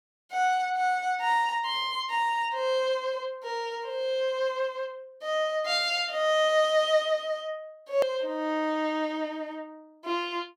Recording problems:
edit click; at 8 s

